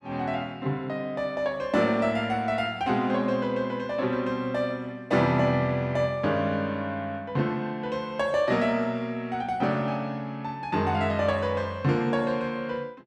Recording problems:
none

